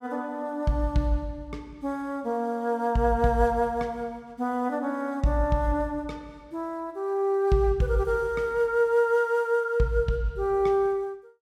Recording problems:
none

